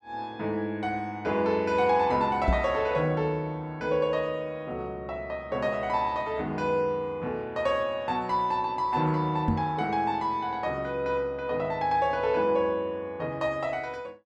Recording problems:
knock on the microphone; at 2.5 s and at 9.5 s; peak +5 dB vs average level

